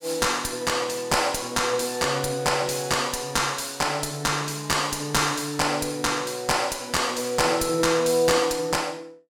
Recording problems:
distorted audio; soft clipping, signal-to-distortion ratio 10 dB

